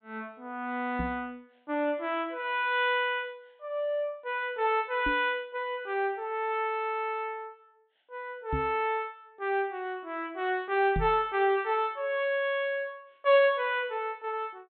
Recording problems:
treble cut off; nothing above 4 kHz
microphone bump; 4 times, first at 1 s; peak 0 dB vs average level

